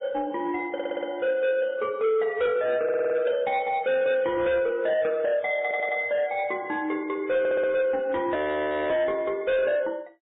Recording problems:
treble cut off; nothing above 3.6 kHz
codec artefacts; MP3, log-spectral distance 2 dB
distorted audio; soft clipping, signal-to-distortion ratio 11 dB
stutter; 4 times, first at 0.5 s
frozen audio; at 8.5 s for 0.5 s

